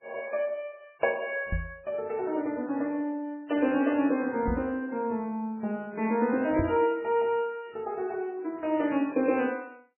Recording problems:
lossy codec; MP3, log-spectral distance 2 dB, nothing above 2.5 kHz
knock on the microphone; at 1.5 s, at 4.5 s and at 6.5 s; peak +2 dB vs average level

